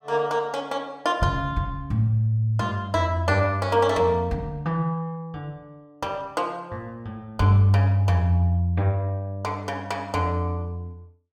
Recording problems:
none

